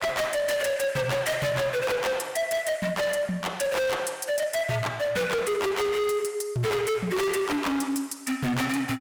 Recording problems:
distortion; hard clipping, signal-to-distortion ratio 6 dB

